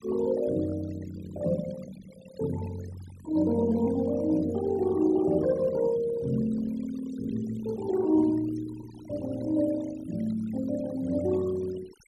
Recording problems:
denoising artefacts; signal-to-artefact ratio 18 dB

